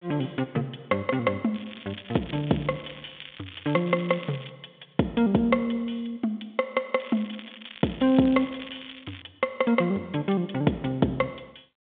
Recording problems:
telephone audio; 150 Hz to 3.6 kHz, G.726
crackle; from 1.5 to 4.5 s and from 7 to 9 s; loose cable, SNR 17 dB

